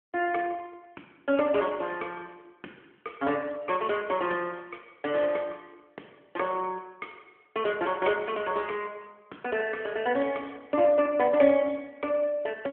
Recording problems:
telephone audio; 240 Hz to 3.3 kHz, AMR-NB

